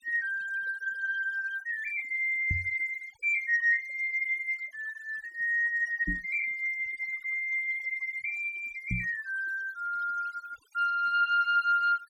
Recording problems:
denoising artefacts; signal-to-artefact ratio 21 dB
knock on the microphone; at 2.5 s, at 6 s and at 9 s; peak 0 dB vs average level

